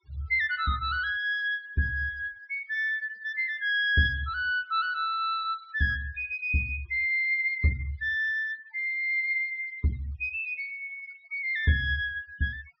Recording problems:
treble cut off; nothing above 5.5 kHz
noise reduction artefacts; signal-to-artefact ratio 25 dB

